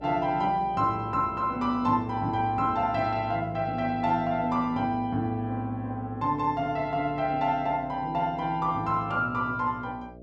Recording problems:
hum; 60 Hz, harmonics up to 660 Hz, SNR 18 dB

